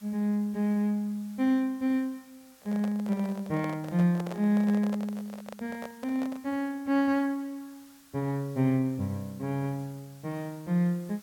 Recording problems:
background hiss; SNR 26 dB
microphone handling noise; from 2.5 to 6.5 s; peak -6 dB vs average level

